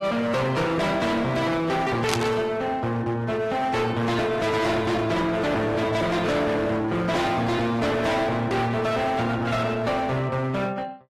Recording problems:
lossy compression; AAC, log-spectral distance 3 dB, nothing above 13.1 kHz
distortion; hard clipping, signal-to-distortion ratio 6 dB
burst of static; at 2 s; peak +3 dB vs average level

